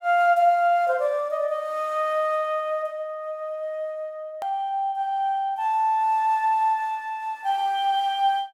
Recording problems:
click at an edit; at 4.5 s

